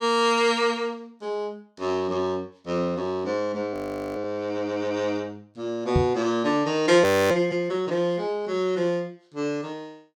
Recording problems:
frozen audio; at 3.5 s and at 7 s
knock on the microphone; at 6 s; peak +6 dB vs average level

